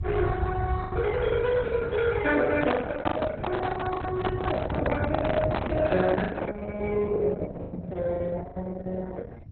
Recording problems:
codec artefacts; Opus, then MP2, log-spectral distance 3 dB
low-frequency rumble; below 120 Hz, SNR 6 dB
packet loss; 9% of the sound replaced, filled with the last packet
microphone handling noise; from 2.5 to 6.5 s; peak +10 dB vs average level

